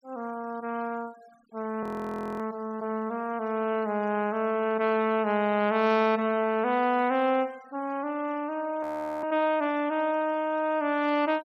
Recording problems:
denoising artefacts; signal-to-artefact ratio 26 dB
audio freezing; at 2 s for 0.5 s and at 9 s

